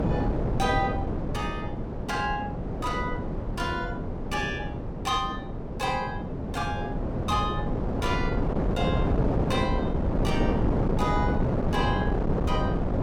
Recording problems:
wind noise; below 410 Hz, SNR -3 dB

